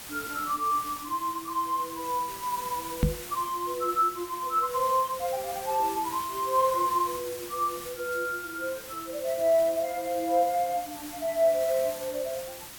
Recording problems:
hiss; slope -1 dB per octave, SNR 11 dB
knock on the microphone; at 3 s; peak +8 dB vs average level

